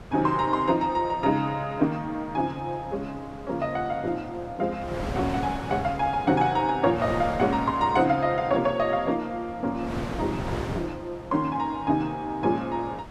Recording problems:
wind on the microphone; below 850 Hz, SNR 12 dB

